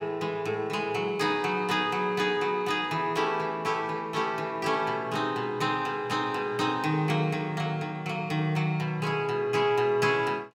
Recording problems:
none

